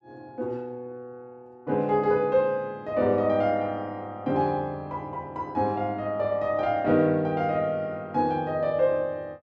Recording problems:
none

